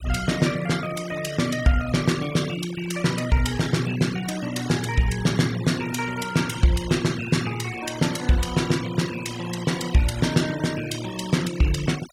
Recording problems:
denoising artefacts; signal-to-artefact ratio 14 dB

